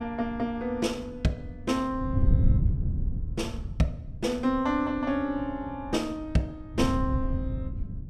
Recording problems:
wind on the microphone; below 110 Hz, SNR 0 dB

